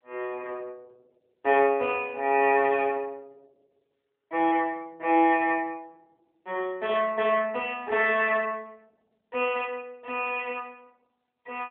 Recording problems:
phone line; 300 Hz to 3.5 kHz, AMR-NB

